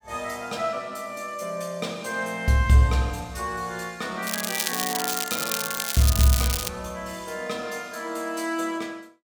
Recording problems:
crackling; from 4.5 to 6.5 s; loose cable, SNR 0 dB

